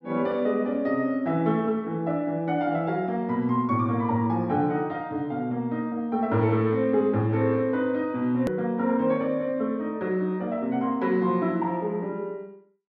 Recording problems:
edit click; at 8.5 s

